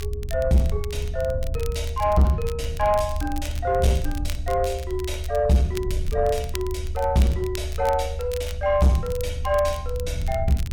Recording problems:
distortion; soft clipping, signal-to-distortion ratio 11 dB
rumble; below 76 Hz, SNR 7 dB
crackle; vinyl, SNR 18 dB

